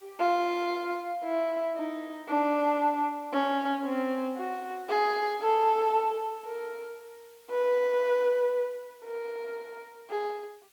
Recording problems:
background hiss; slope +1 dB per octave, SNR 29 dB

